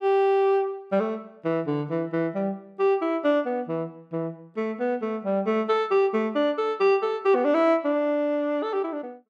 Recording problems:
none

